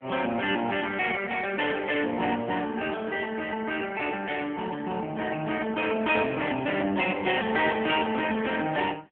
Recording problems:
phone line; 190 Hz to 3.3 kHz, AMR-NB

